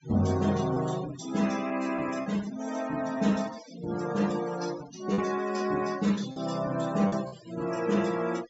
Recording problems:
low-pass filter; nothing above 7.5 kHz
noise reduction artefacts; signal-to-artefact ratio 16 dB
packet loss; 3% of the sound replaced, filled with repeated pitch periods

